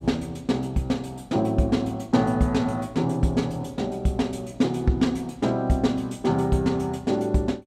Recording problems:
none

